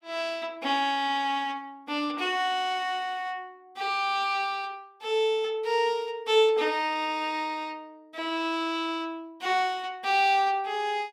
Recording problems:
none

